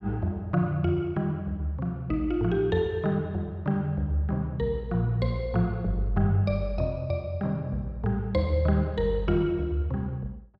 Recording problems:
none

